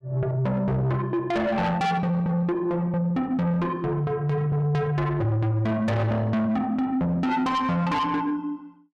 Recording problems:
distorted audio; soft clipping, signal-to-distortion ratio 7 dB

